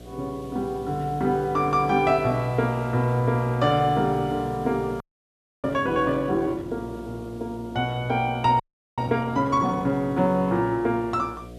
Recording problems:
hum; 60 Hz, harmonics up to 720 Hz, SNR 19 dB
hiss; slope 0 dB per octave, SNR 29 dB
audio freezing; at 5 s for 0.5 s and at 8.5 s

